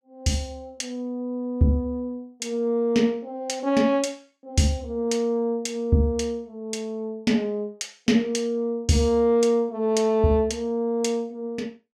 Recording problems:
none

